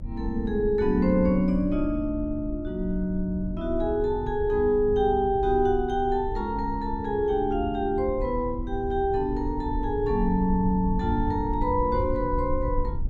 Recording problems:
low-frequency rumble; below 84 Hz, SNR 9 dB

